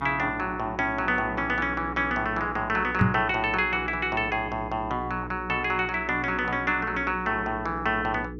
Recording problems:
electrical hum; 60 Hz, harmonics up to 480 Hz, SNR 13 dB
microphone bump; at 3 s; peak +8 dB vs average level

